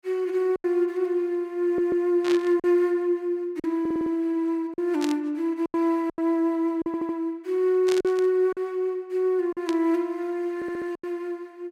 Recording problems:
packet loss; 6% of the sound replaced, filled with silence
stutter; 4 times, first at 1.5 s
burst of static; 4 times, first at 2 s; peak -4 dB vs average level

